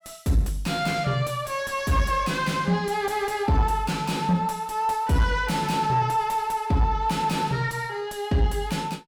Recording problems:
distorted audio; soft clipping, signal-to-distortion ratio 10 dB

